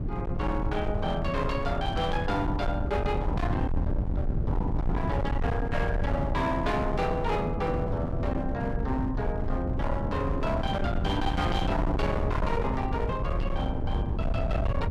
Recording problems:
distortion; hard clipping, signal-to-distortion ratio 8 dB
low-frequency rumble; below 120 Hz, SNR 1 dB
wind on the microphone; below 310 Hz, SNR 5 dB

